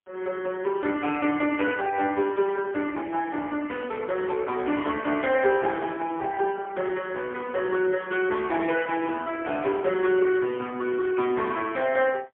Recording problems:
phone line; 260 Hz to 3.4 kHz, AMR-NB, then MP3

